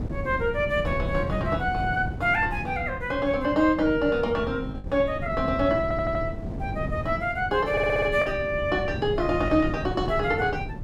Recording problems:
wind noise; below 220 Hz, SNR 8 dB
packet loss; 1.4% of the sound replaced, filled with the last packet
stutter; at 6 s and at 7.5 s

